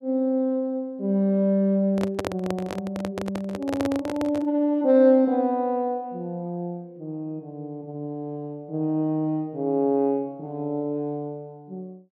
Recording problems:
microphone handling noise; from 2 to 4.5 s; peak 0 dB vs average level

